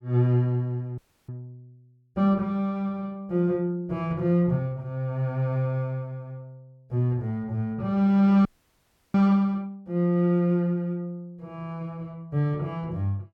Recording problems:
frozen audio; at 1 s and at 8.5 s for 0.5 s

